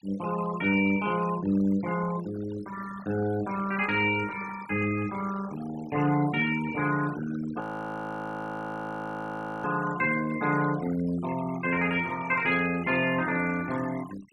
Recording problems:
noise reduction artefacts; signal-to-artefact ratio 15 dB
frozen audio; at 7.5 s for 2 s

